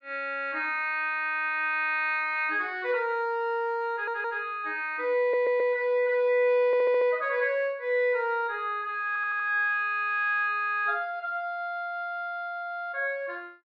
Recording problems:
audio stuttering; 4 times, first at 4 s

